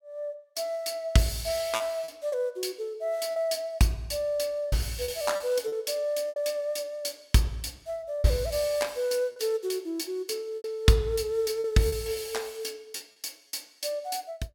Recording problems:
packet loss; 5% of the sound replaced, filled with repeated pitch periods

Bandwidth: 17.5 kHz